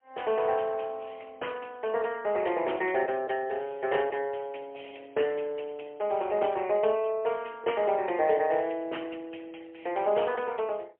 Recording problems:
phone line; 300 Hz to 3.1 kHz, AMR-NB, then MP3

